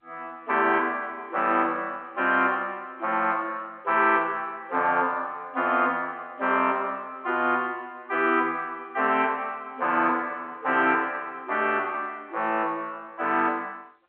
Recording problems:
telephone audio; 240 Hz to 3.5 kHz, G.711

